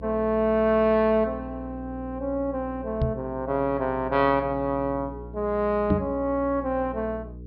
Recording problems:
treble missing; nothing above 5.5 kHz
mains hum; 60 Hz, harmonics up to 480 Hz, SNR 15 dB
knock on the microphone; at 3 s and at 6 s; peak +5 dB vs average level

